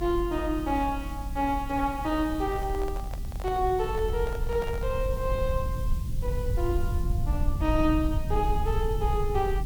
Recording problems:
electrical hum; 60 Hz, harmonics up to 300 Hz, SNR 17 dB
background hiss; slope +3 dB per octave, SNR 20 dB
rumble; below 80 Hz, SNR 3 dB
microphone handling noise; from 2.5 to 5 s; peak -7 dB vs average level

